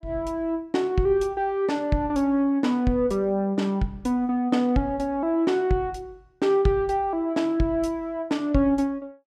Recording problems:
none

